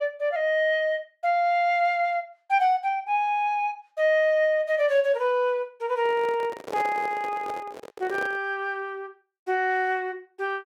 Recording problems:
microphone handling noise; from 6 to 8.5 s; peak -5 dB vs average level

